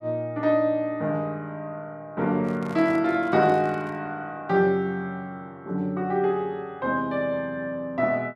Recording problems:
microphone handling noise; from 2.5 to 4 s; peak -12 dB vs average level

